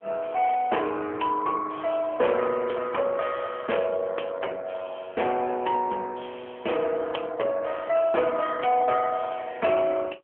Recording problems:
phone line; 320 Hz to 3.2 kHz, AMR-NB

